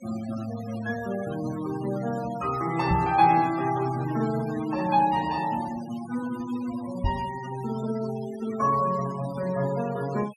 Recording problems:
noise reduction artefacts; signal-to-artefact ratio 15 dB
microphone bump; at 3 s and at 7 s; peak +3 dB vs average level

